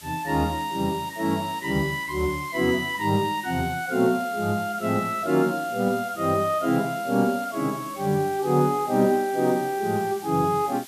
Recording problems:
hiss; slope +2 dB per octave, SNR 18 dB

